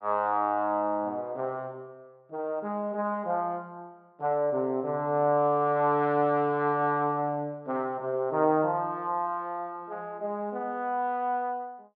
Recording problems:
treble missing; nothing above 5.5 kHz

